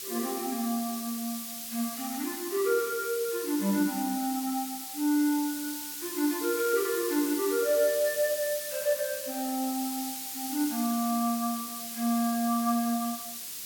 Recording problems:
hiss; SNR 6 dB

